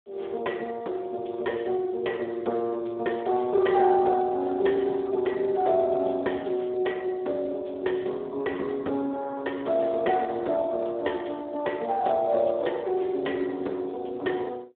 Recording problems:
telephone audio; 280 Hz to 3.6 kHz, Speex

